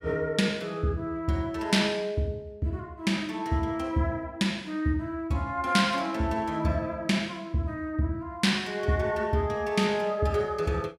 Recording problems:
none

